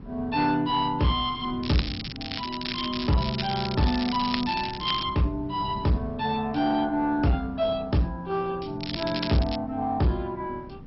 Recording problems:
lossy compression; MP2, log-spectral distance 8 dB, nothing above 4.9 kHz
distorted audio; soft clipping, signal-to-distortion ratio 12 dB
wind on the microphone; below 240 Hz, SNR 16 dB
crackle; from 1.5 to 5 s and at 9 s; loose cable, SNR 7 dB

